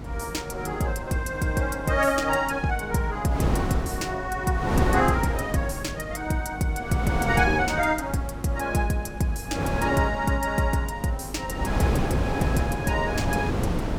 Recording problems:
mains hum; 50 Hz, harmonics up to 300 Hz, SNR 16 dB
wind on the microphone; below 500 Hz, SNR 5 dB

